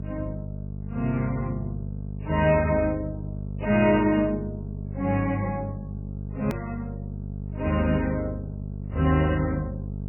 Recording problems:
codec artefacts; MP3, log-spectral distance 2 dB, nothing above 2.5 kHz
hum; 50 Hz, harmonics up to 500 Hz, SNR 8 dB
edit click; at 6.5 s

